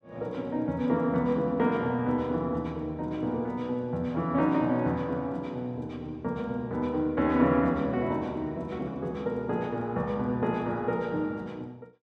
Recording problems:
none

